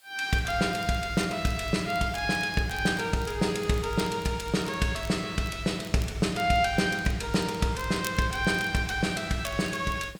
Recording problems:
hiss; SNR 29 dB
crackling; vinyl, SNR 21 dB

